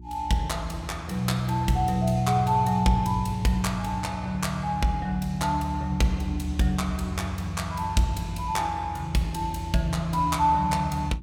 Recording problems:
hum; 60 Hz, harmonics up to 360 Hz, SNR 18 dB

